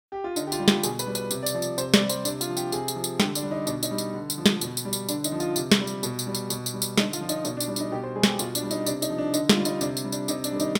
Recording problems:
none

